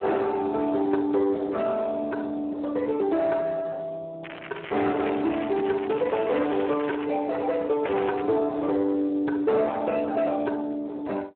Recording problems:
phone line; 240 Hz to 2 kHz, Speex
distortion; hard clipping, signal-to-distortion ratio 10 dB
crackle; from 4 to 7 s and at 8 s; loose cable, SNR 14 dB

